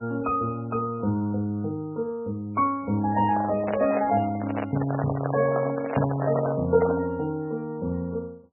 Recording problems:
lossy codec; MP3, log-spectral distance 3 dB, nothing above 2.5 kHz
microphone handling noise; from 3 to 7 s; peak +2 dB vs average level

